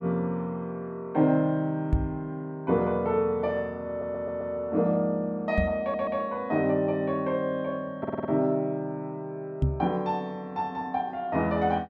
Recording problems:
microphone bump; at 2 s, at 5.5 s and at 9.5 s; peak +7 dB vs average level
audio stuttering; at 4 s, at 6 s and at 8 s

